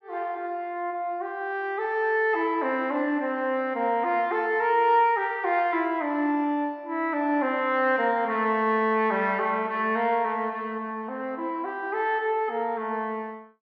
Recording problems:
treble missing; nothing above 8 kHz

